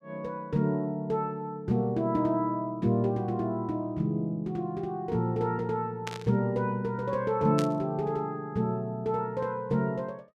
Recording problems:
static burst; at 6 s and at 7.5 s; peak -3 dB vs average level

